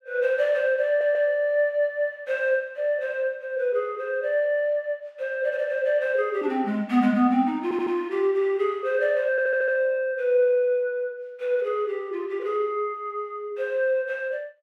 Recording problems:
stutter; at 1 s, at 7.5 s and at 9.5 s

